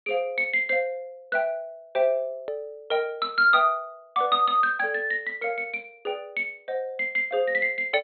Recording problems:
treble cut off; nothing above 4.3 kHz
hard cut with a click; at 2.5 s

